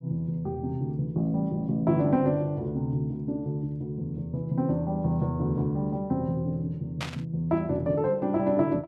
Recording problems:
burst of static; at 7 s; peak -2 dB vs average level

